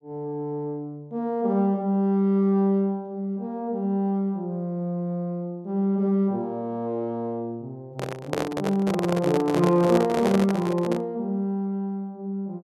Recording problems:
microphone handling noise; from 8 to 11 s; peak +3 dB vs average level

